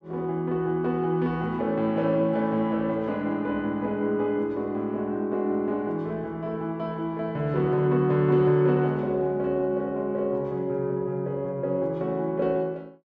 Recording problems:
none

